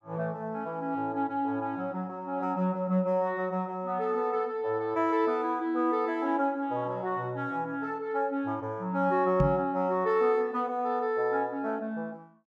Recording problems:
microphone thump; at 9.5 s; peak +6 dB vs average level

